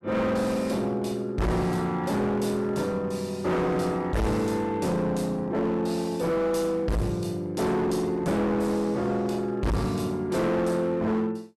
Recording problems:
distortion; hard clipping, uneven, signal-to-distortion ratio 6 dB

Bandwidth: 14.5 kHz